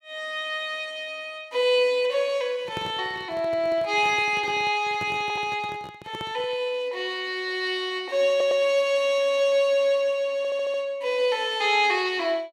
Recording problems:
microphone handling noise; from 2.5 to 6.5 s; peak -7 dB vs average level
audio stuttering; at 5 s, at 8.5 s and at 10 s

